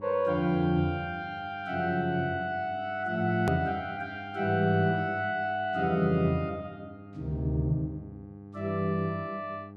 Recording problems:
electrical hum; 50 Hz, harmonics up to 900 Hz, SNR 17 dB
edit click; at 3.5 s

